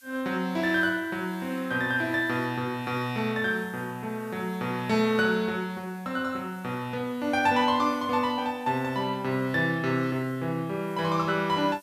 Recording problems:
background hiss; slope +5 dB per octave, SNR 27 dB

